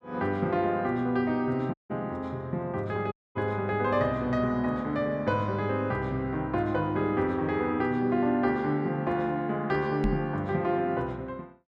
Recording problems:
dropout; at 1.5 s and at 3 s
microphone thump; at 10 s; peak +3 dB vs average level

